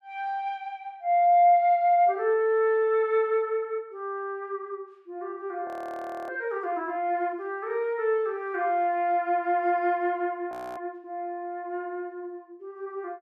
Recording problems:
audio freezing; at 5.5 s for 0.5 s and at 11 s

